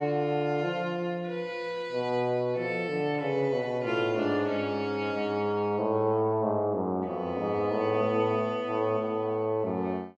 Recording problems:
none

